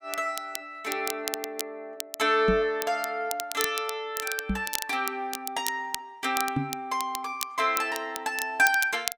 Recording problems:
crackling; vinyl, SNR 7 dB
microphone thump; at 2.5 s, at 4.5 s and at 6.5 s; peak +5 dB vs average level

